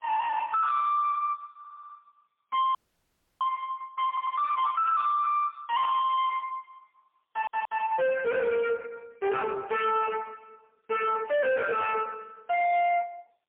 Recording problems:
phone line; 970 Hz to 3.5 kHz, AMR-NB, then MP3
distortion; hard clipping, uneven, signal-to-distortion ratio 5 dB
audio stuttering; at 1.5 s, at 4 s and at 7.5 s
dropout; at 3 s for 0.5 s

